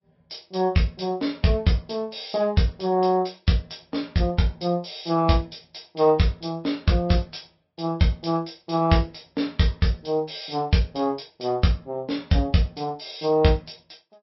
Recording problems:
low-pass filter; nothing above 5.5 kHz
lossy compression; Vorbis, log-spectral distance 4 dB

